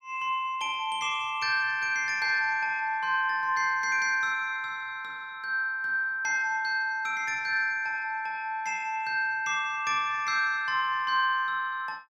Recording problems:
none

